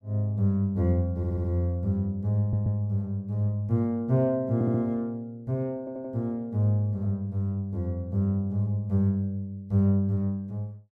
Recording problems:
stutter; 4 times, first at 1 s

